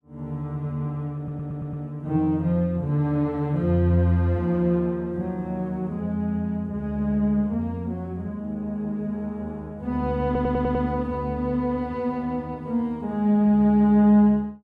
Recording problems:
audio stuttering; at 1 s and at 10 s

